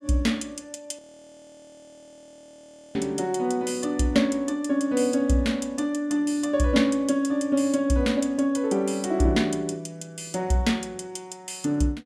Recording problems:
frozen audio; at 1 s for 2 s

